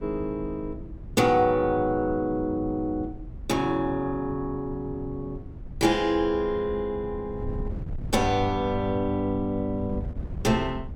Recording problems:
wind noise; below 120 Hz, SNR 13 dB

